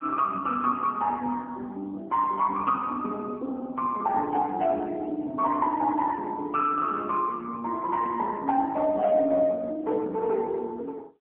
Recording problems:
telephone audio; 220 Hz to 3.2 kHz, AMR-NB

